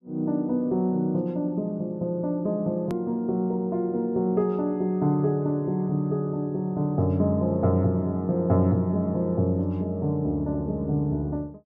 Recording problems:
edit click; at 3 s

